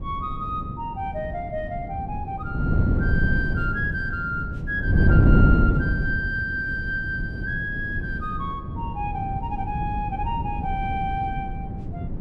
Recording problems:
wind noise; below 190 Hz, SNR -2 dB

